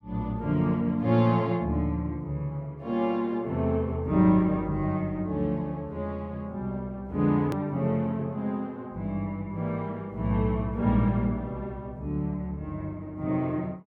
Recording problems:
hard cut with a click; at 7.5 s

